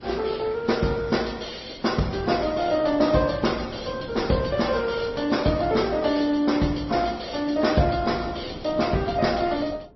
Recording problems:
codec artefacts; Opus, then MP3, log-spectral distance 6 dB, nothing above 5.7 kHz
wind noise; below 400 Hz, SNR 19 dB

